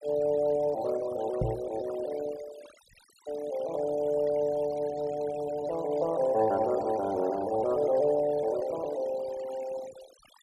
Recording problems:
noise reduction artefacts; signal-to-artefact ratio 18 dB
knock on the microphone; at 1.5 s; peak +2 dB vs average level

